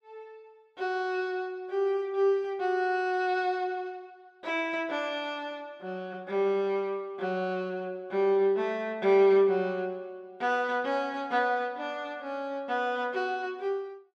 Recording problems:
none

